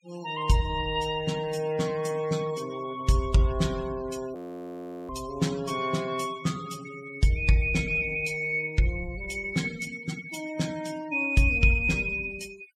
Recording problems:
noise reduction artefacts; signal-to-artefact ratio 19 dB
audio freezing; at 4.5 s for 0.5 s

